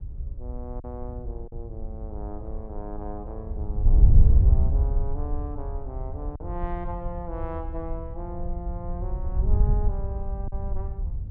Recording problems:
wind noise; below 70 Hz, SNR -11 dB
packet loss; 1.5% of the sound replaced, filled with silence

